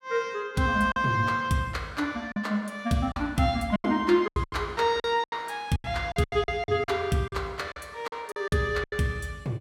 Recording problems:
lost packets; 11% of the sound replaced, filled with silence

